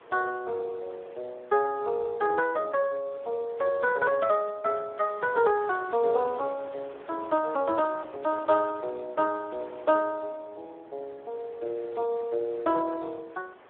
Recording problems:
telephone audio; 300 Hz to 2.8 kHz, Speex
wind on the microphone; below 1.3 kHz, SNR 21 dB

